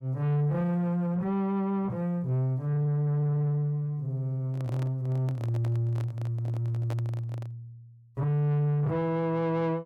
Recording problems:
distorted audio; soft clipping, signal-to-distortion ratio 11 dB
handling noise; from 4.5 to 7.5 s; peak -5 dB vs average level

